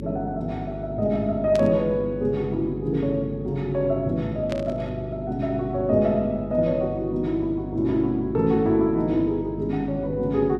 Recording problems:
hum; 50 Hz, harmonics up to 400 Hz, SNR 10 dB
burst of static; at 1.5 s and at 4.5 s; peak -7 dB vs average level

